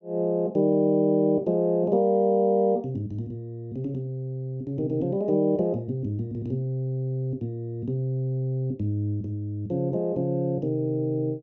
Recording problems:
none

